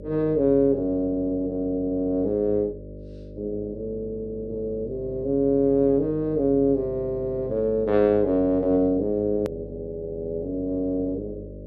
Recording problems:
electrical hum; 50 Hz, harmonics up to 600 Hz, SNR 15 dB
hard cut with a click; at 9.5 s

